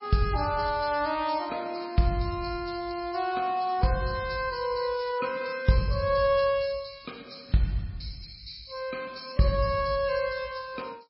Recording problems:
codec artefacts; MP3, log-spectral distance 5 dB, nothing above 5.3 kHz

